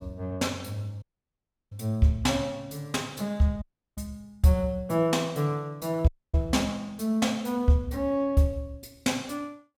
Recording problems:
dropout; at 1 s for 0.5 s, at 3.5 s and at 6 s

